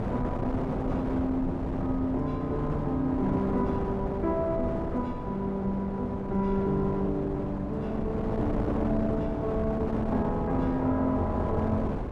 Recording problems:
wind on the microphone; below 500 Hz, SNR 3 dB

